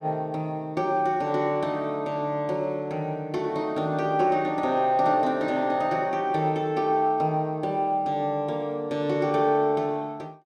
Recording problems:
none

